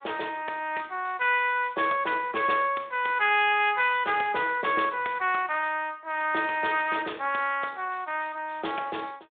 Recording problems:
phone line; 280 Hz to 3.6 kHz, Speex

